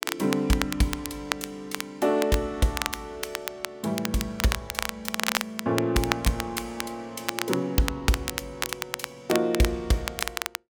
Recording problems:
crackle; vinyl, SNR 4 dB

